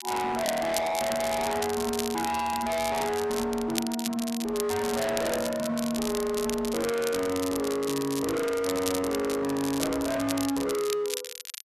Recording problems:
distorted audio; hard clipping, signal-to-distortion ratio 7 dB
crackle; vinyl, SNR 8 dB

